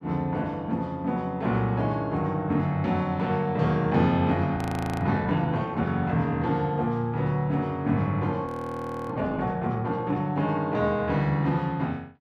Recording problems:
frozen audio; at 4.5 s and at 8.5 s for 0.5 s

